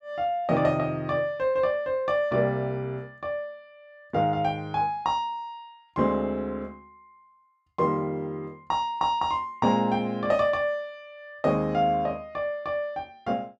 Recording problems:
none

